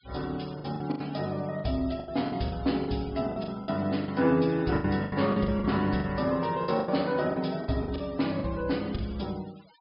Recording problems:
treble missing; nothing above 5.5 kHz
noise reduction artefacts; signal-to-artefact ratio 22 dB
lost packets; 13% of the sound replaced, filled with the last packet

